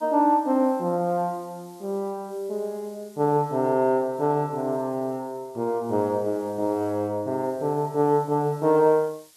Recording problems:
hiss; SNR 28 dB

